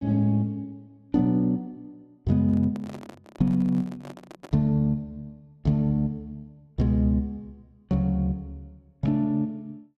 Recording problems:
microphone handling noise; from 2.5 to 4.5 s; peak -12 dB vs average level

